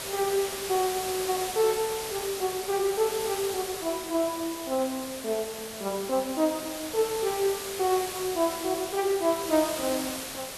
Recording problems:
background hiss; SNR 6 dB

